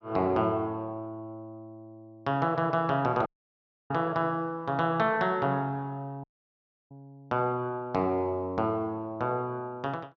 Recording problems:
dropout; at 3.5 s for 0.5 s and at 6 s for 0.5 s

